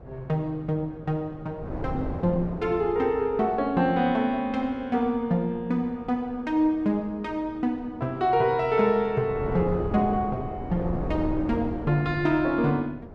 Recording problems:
wind noise; below 440 Hz, SNR 10 dB

